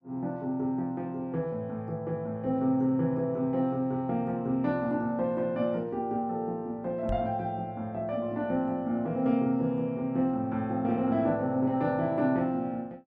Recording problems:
microphone bump; at 7 s; peak -2 dB vs average level

